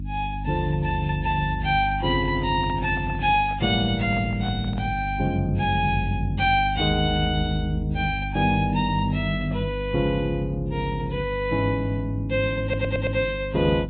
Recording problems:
low-pass filter; nothing above 3.7 kHz
lossy codec; Vorbis, log-spectral distance 2 dB
electrical hum; 50 Hz, harmonics up to 300 Hz, SNR 8 dB
handling noise; from 2 to 5 s; peak -12 dB vs average level
audio stuttering; at 13 s

